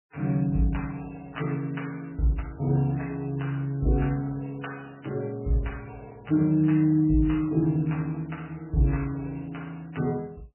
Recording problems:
lossy compression; MP3, log-spectral distance 5 dB, nothing above 3 kHz

